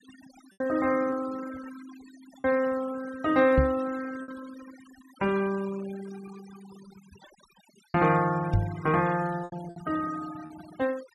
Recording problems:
noise reduction artefacts; signal-to-artefact ratio 18 dB
packet loss; 4% of the sound replaced, filled with repeated pitch periods
knock on the microphone; at 3.5 s and at 8.5 s; peak +7 dB vs average level

